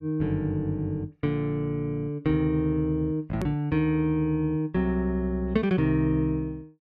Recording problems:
click at an edit; at 3.5 s

